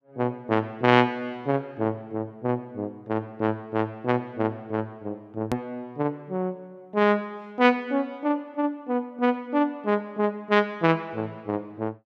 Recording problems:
hard cut with a click; at 5.5 s

